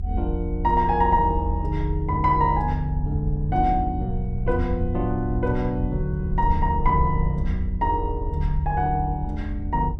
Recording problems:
low-frequency rumble; below 78 Hz, SNR 4 dB

